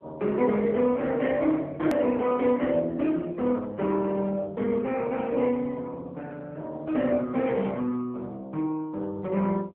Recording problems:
telephone audio; 170 Hz to 3.4 kHz, AMR-NB
edit click; at 2 s

